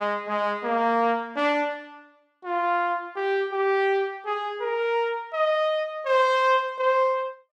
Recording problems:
none

